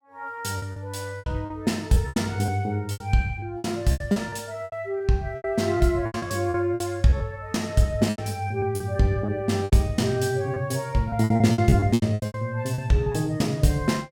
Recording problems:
packet loss; 14% of the sound replaced, filled with repeated pitch periods

